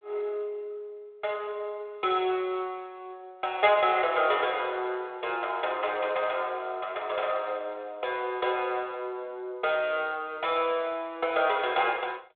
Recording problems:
phone line; 320 Hz to 3.6 kHz, G.726

